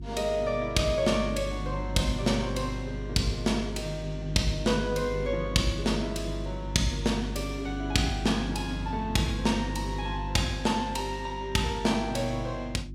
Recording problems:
electrical hum; 50 Hz, harmonics up to 350 Hz, SNR 8 dB

